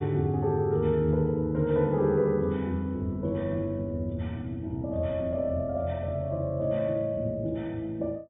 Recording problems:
treble cut off; nothing above 4 kHz

